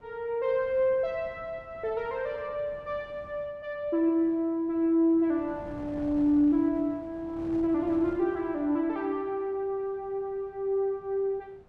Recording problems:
wind on the microphone; below 630 Hz, SNR 21 dB

